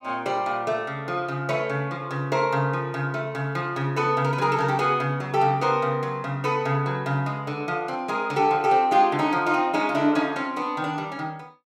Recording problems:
none

